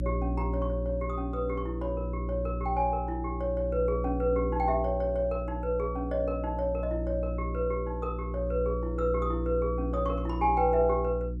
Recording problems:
hum; 60 Hz, harmonics up to 360 Hz, SNR 4 dB

